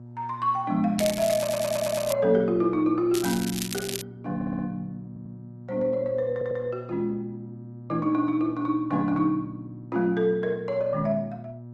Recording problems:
codec artefacts; Opus, log-spectral distance 2 dB
hum; 60 Hz, harmonics up to 720 Hz, SNR 16 dB
crackling; from 1 to 2 s and at 3 s; loose cable, SNR 9 dB
stutter; 4 times, first at 1.5 s

